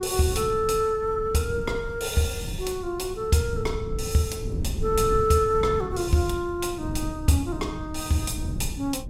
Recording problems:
low-frequency rumble; below 150 Hz, SNR 9 dB

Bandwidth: 16 kHz